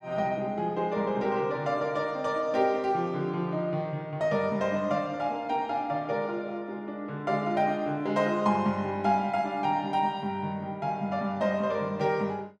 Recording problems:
none

